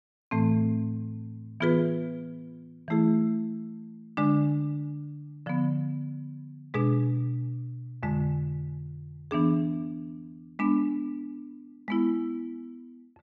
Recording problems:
none

